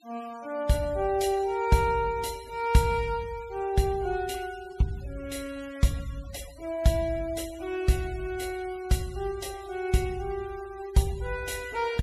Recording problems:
noise reduction artefacts; signal-to-artefact ratio 20 dB

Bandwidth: 14.5 kHz